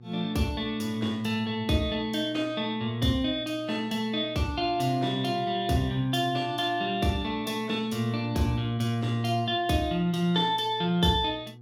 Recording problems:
electrical hum; 60 Hz, harmonics up to 480 Hz, SNR 20 dB

